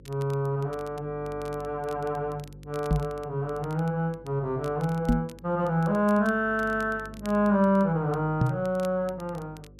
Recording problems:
hum; 50 Hz, harmonics up to 550 Hz, SNR 21 dB
crackle; vinyl, SNR 26 dB
microphone bump; at 3 s, at 5 s and at 8.5 s; peak +7 dB vs average level

